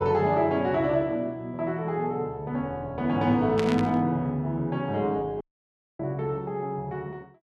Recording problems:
burst of static; at 3.5 s; peak -3 dB vs average level
dropout; at 5.5 s for 0.5 s

